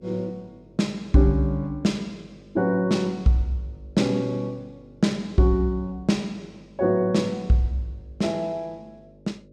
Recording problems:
hum; 50 Hz, harmonics up to 600 Hz, SNR 26 dB

